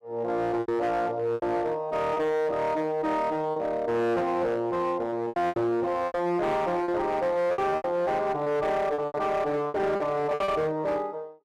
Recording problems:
distorted audio; hard clipping, uneven, signal-to-distortion ratio 11 dB
packet loss; 9% of the sound replaced, filled with repeated pitch periods

